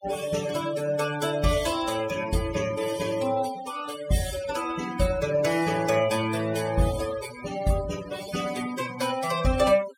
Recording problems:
denoising artefacts; signal-to-artefact ratio 12 dB

